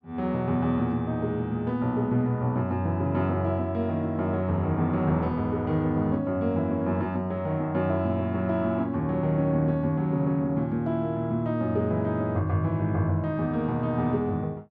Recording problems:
none

